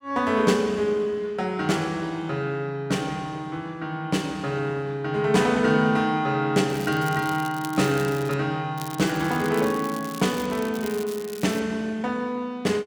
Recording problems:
crackling; from 6.5 to 8.5 s and from 9 to 12 s; loose cable, SNR 16 dB

